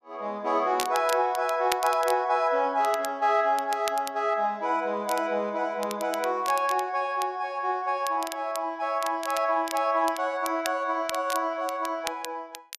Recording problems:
crackle; vinyl, SNR 13 dB

